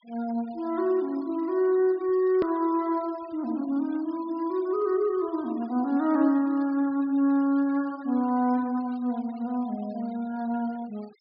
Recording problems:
low-pass filter; nothing above 5.5 kHz
noise reduction artefacts; signal-to-artefact ratio 26 dB
edit click; at 2.5 s

